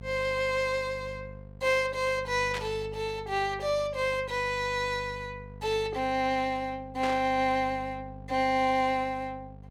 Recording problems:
mains hum; 50 Hz, harmonics up to 700 Hz, SNR 17 dB
static burst; at 2.5 s and at 7 s; peak -4 dB vs average level

